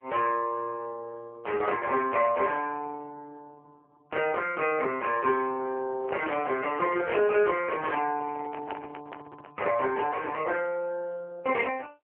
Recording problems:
telephone audio; 320 Hz to 3 kHz, AMR-NB
handling noise; from 6 to 9.5 s; peak -7 dB vs average level

